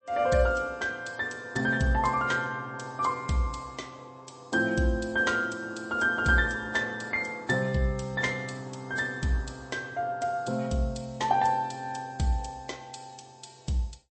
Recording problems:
lossy compression; MP3, log-spectral distance 4 dB, nothing above 8.2 kHz

